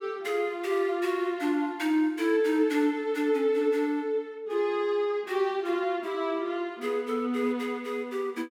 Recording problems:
none

